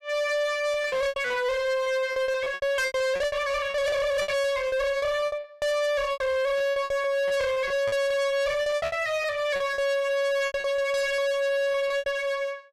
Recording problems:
distortion; hard clipping, uneven, signal-to-distortion ratio 4 dB
lost packets; 15% of the sound replaced, filled with repeated pitch periods

